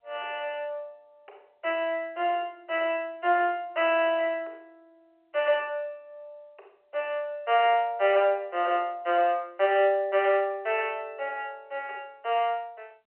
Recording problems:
phone line; 370 Hz to 3.1 kHz, G.711

